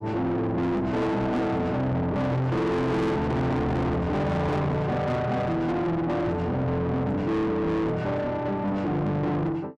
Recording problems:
distorted audio; soft clipping, signal-to-distortion ratio 7 dB

